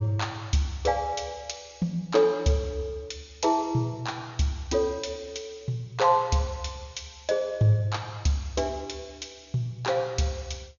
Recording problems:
treble cut off; nothing above 7 kHz

